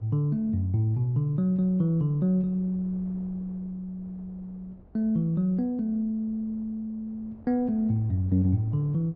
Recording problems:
wind on the microphone; below 340 Hz, SNR 25 dB

